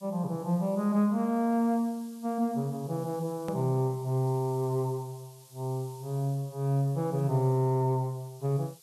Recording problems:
hiss; SNR 24 dB
hard cut with a click; at 3.5 s

